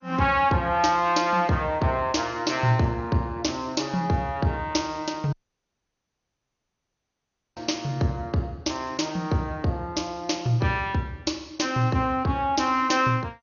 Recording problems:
codec artefacts; MP2, log-spectral distance 2 dB, nothing above 6.7 kHz
dropout; at 5.5 s for 2 s

